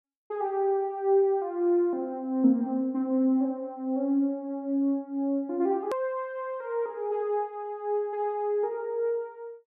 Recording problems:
click at an edit; at 6 s

